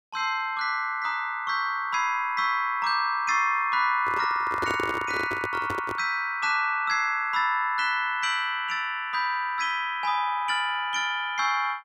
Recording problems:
handling noise; from 4 to 6 s; peak -2 dB vs average level

